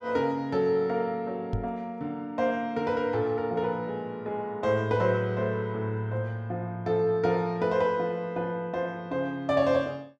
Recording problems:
microphone bump; at 1.5 s; peak +2 dB vs average level

